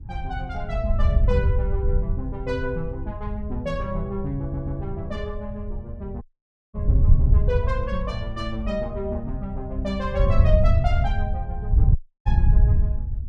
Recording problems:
wind noise; below 86 Hz, SNR -5 dB
audio stuttering; at 4.5 s
dropout; at 6 s for 0.5 s and at 12 s

